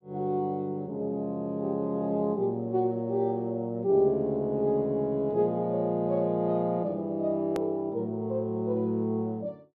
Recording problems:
hard cut with a click; at 7.5 s

